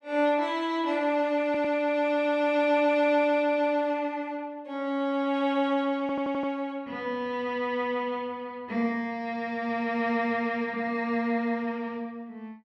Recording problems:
audio stuttering; at 1.5 s and at 6 s

